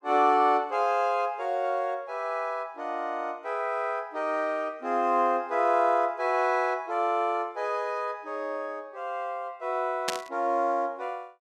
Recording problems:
burst of static; at 10 s; peak +3 dB vs average level

